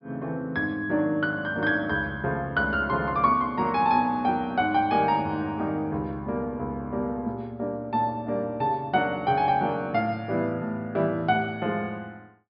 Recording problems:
low-pass filter; nothing above 5.5 kHz

